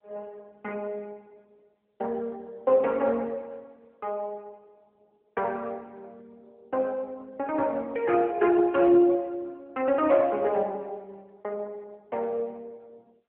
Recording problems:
telephone audio; 300 Hz to 3.1 kHz, AMR-NB

